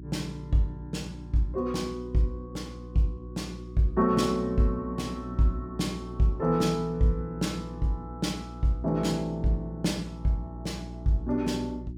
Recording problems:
electrical hum; 60 Hz, harmonics up to 360 Hz, SNR 12 dB

